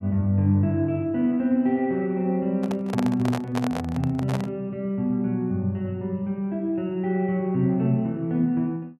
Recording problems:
handling noise; from 2.5 to 4.5 s; peak -1 dB vs average level

